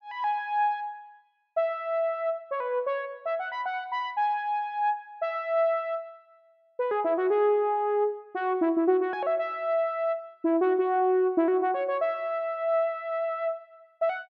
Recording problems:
none

